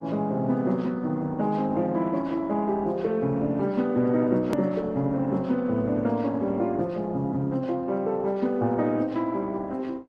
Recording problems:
lossy codec; AAC, then Opus, log-spectral distance 2 dB, nothing above 13.3 kHz
edit click; at 4.5 s

